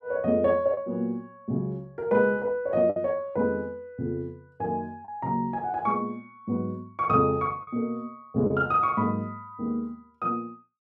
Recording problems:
lost packets; 2% of the sound replaced, filled with the last packet

